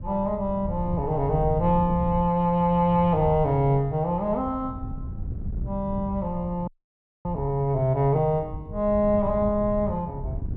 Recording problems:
wind on the microphone; below 120 Hz, SNR 11 dB
audio freezing; at 6.5 s for 0.5 s

